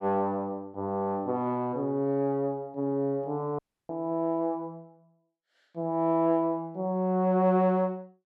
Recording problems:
audio cutting out; at 3.5 s

